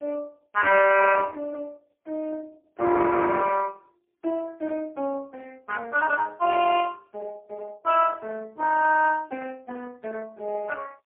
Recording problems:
phone line; 390 Hz to 3.1 kHz, AMR-NB, then MP3

